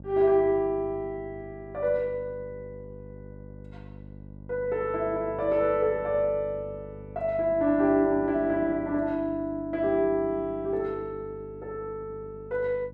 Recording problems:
hum; 50 Hz, harmonics up to 650 Hz, SNR 18 dB

